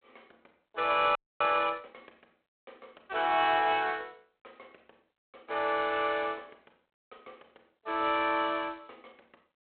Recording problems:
phone line; 280 Hz to 3.4 kHz, G.726
audio freezing; at 1 s

